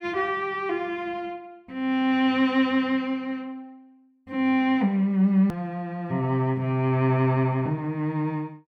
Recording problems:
click at an edit; at 5.5 s

